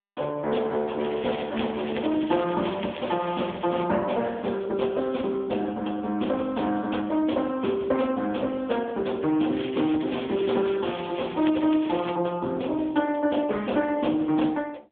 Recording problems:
phone line; 190 Hz to 3.5 kHz, AMR-NB
crackle; from 1 to 4 s and from 9.5 to 12 s; loose cable, SNR 14 dB

